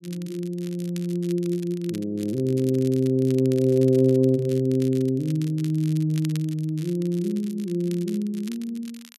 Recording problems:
crackle; vinyl, SNR 22 dB

